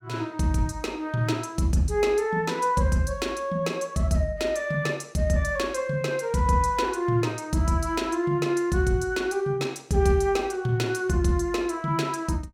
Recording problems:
none

